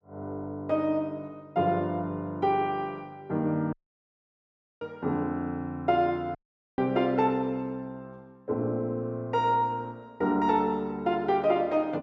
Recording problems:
audio cutting out; at 3.5 s for 1 s and at 6.5 s

